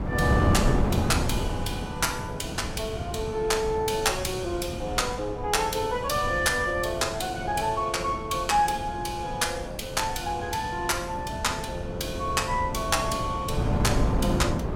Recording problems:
wind on the microphone; below 300 Hz, SNR 4 dB

